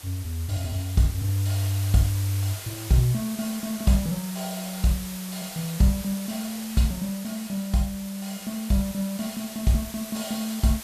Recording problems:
background hiss; slope -1 dB per octave, SNR 11 dB

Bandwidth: 14.5 kHz